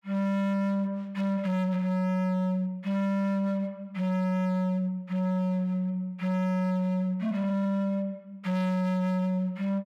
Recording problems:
distorted audio; hard clipping, signal-to-distortion ratio 6 dB

